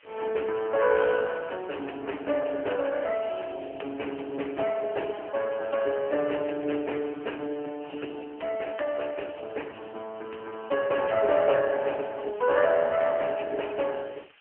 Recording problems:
telephone audio; 240 Hz to 3 kHz, AMR-NB
hiss; SNR 27 dB

